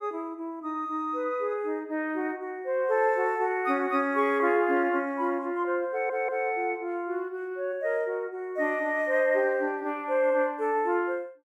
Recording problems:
audio stuttering; at 6 s

